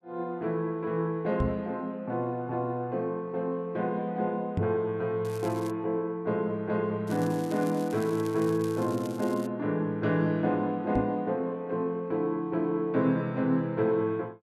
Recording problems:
microphone thump; at 1.5 s, at 4.5 s and at 11 s; peak +3 dB vs average level
crackle; at 5 s and from 7 to 9.5 s; loose cable, SNR 20 dB

